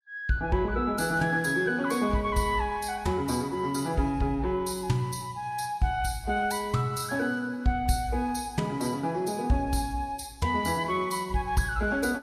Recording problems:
codec artefacts; Vorbis, log-spectral distance 3 dB, nothing above 12.3 kHz

